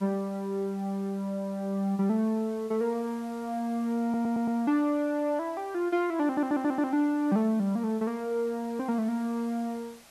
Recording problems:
hiss; SNR 25 dB
stutter; at 4 s and at 6 s

